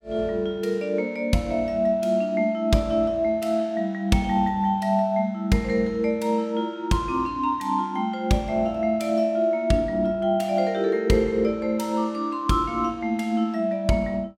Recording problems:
none

